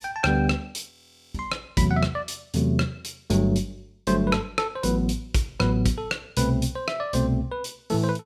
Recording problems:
audio freezing; at 1 s

